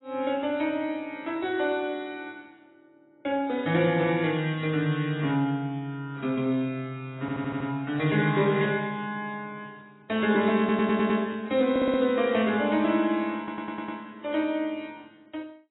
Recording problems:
codec artefacts; AAC, log-spectral distance 3 dB, nothing above 3.8 kHz
stutter; 4 times, first at 7 s

